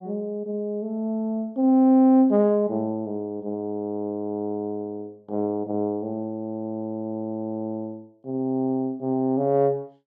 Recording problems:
none

